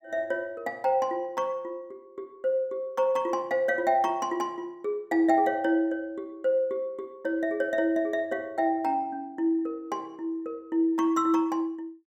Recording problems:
none

